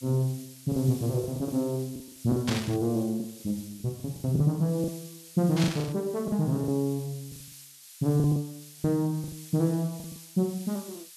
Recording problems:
background hiss; slope +6 dB per octave, SNR 17 dB
packet loss; 11% of the sound replaced, filled with the last packet
static burst; at 2.5 s and at 5.5 s; peak 0 dB vs average level

